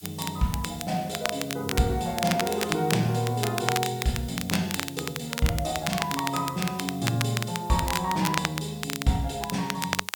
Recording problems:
hiss; slope +4 dB per octave, SNR 19 dB
crackle; vinyl, SNR 5 dB

